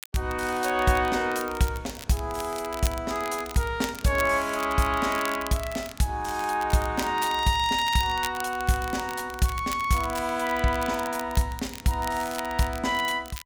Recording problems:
crackling; vinyl, SNR 14 dB

